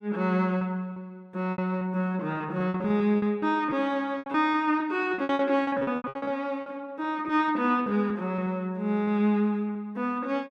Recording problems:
lost packets; 12% of the sound replaced, filled with repeated pitch periods

